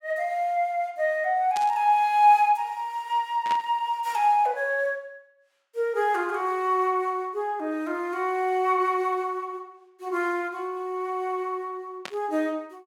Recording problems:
burst of static; at 1.5 s, at 3.5 s and at 12 s; peak -6 dB vs average level

